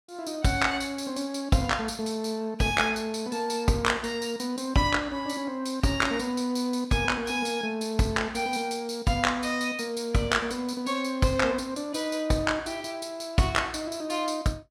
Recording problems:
none

